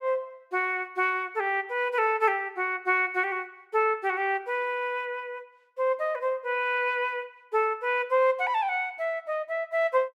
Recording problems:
none

